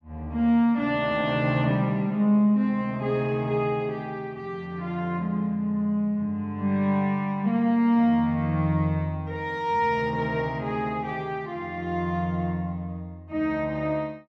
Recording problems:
none

